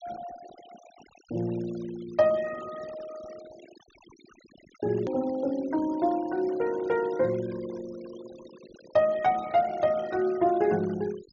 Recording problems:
low-pass filter; nothing above 6.9 kHz
noise reduction artefacts; signal-to-artefact ratio 21 dB
click at an edit; at 5 s

